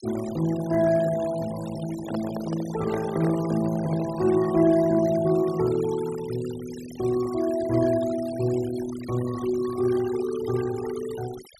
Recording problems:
noise reduction artefacts; signal-to-artefact ratio 17 dB
handling noise; from 2 to 4 s; peak -5 dB vs average level

